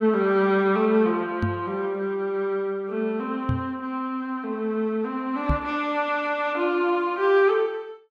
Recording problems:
knock on the microphone; at 1.5 s, at 3.5 s and at 5.5 s; peak +3 dB vs average level

